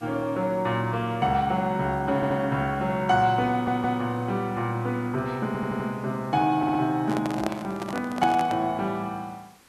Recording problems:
hiss; SNR 29 dB
audio stuttering; 4 times, first at 2 s
handling noise; from 7 to 8.5 s; peak 0 dB vs average level

